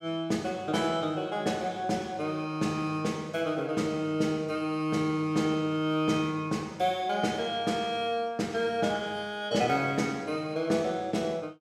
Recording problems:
none

